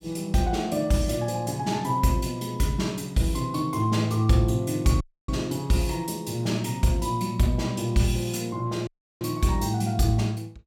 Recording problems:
audio cutting out; at 5 s and at 9 s

